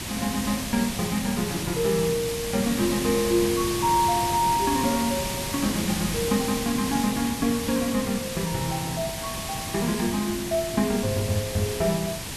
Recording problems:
background hiss; SNR 4 dB

